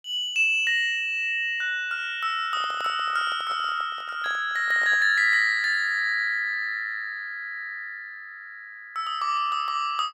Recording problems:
handling noise; from 2.5 to 5 s; peak -12 dB vs average level

